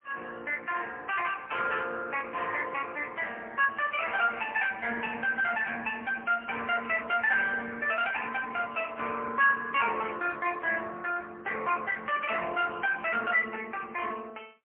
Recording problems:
telephone audio; 280 Hz to 3.5 kHz, AMR-NB, then MP3

